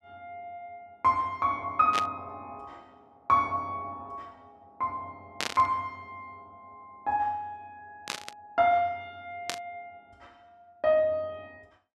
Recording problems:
static burst; 4 times, first at 2 s; peak +2 dB vs average level

